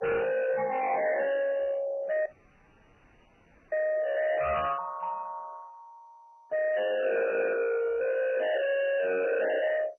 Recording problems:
lossy compression; MP3, then MP2, log-spectral distance 5 dB, nothing above 2.8 kHz
distortion; hard clipping, uneven, signal-to-distortion ratio 6 dB
audio cutting out; at 2.5 s for 1.5 s

